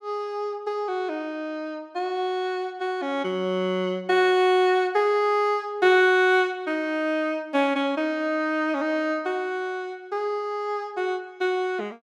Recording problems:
none

